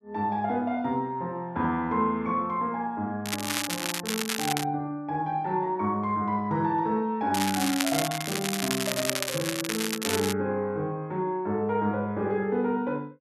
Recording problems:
crackle; from 3.5 to 4.5 s and from 7.5 to 10 s; loose cable, SNR 2 dB

